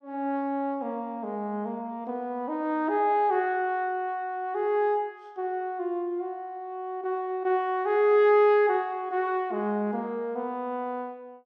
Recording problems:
none

